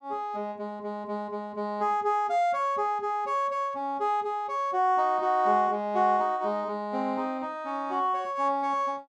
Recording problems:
none

